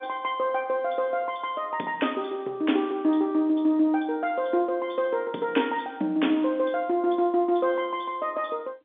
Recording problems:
phone line; 220 Hz to 3.6 kHz, G.711

